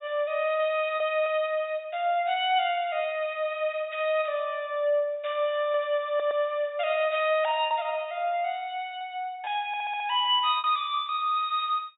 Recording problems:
treble missing; nothing above 4 kHz
lost packets; 2% of the sound replaced, filled with repeated pitch periods
stutter; at 6 s and at 9.5 s

